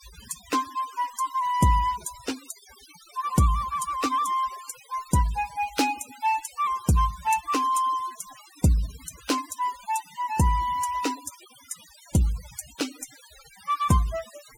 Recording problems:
noise reduction artefacts; signal-to-artefact ratio 16 dB

